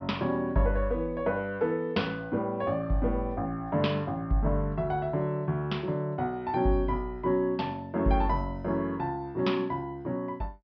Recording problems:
treble missing; nothing above 5.5 kHz

